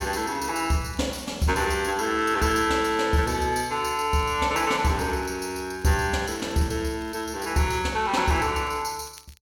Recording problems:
crackling; vinyl, SNR 29 dB

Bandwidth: 17 kHz